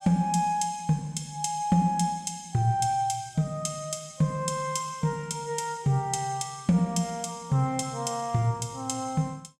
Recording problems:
none

